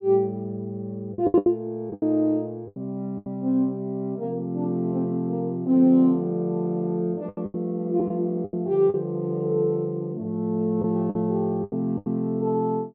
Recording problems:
lost packets; 8% of the sound replaced, filled with the last packet

